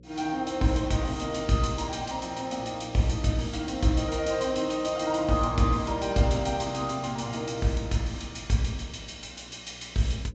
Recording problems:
treble missing; nothing above 8 kHz
hum; 60 Hz, harmonics up to 540 Hz, SNR 23 dB

